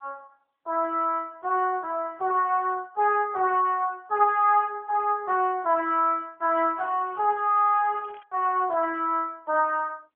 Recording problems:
phone line; 320 Hz to 3.3 kHz, AMR-NB
crackling; from 6.5 to 8 s; loose cable, SNR 29 dB

